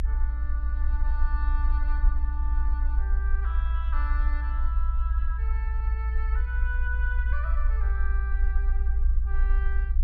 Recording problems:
low-frequency rumble; below 58 Hz, SNR -12 dB

